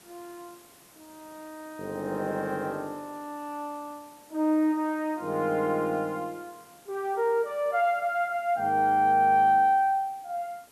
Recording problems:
hiss; slope -3 dB per octave, SNR 27 dB

